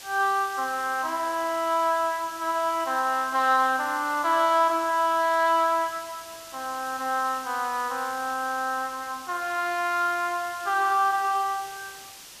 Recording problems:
background hiss; slope +1 dB per octave, SNR 16 dB

